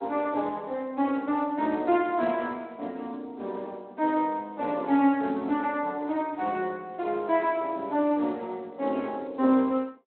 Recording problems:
phone line; 220 Hz to 3.3 kHz, Speex

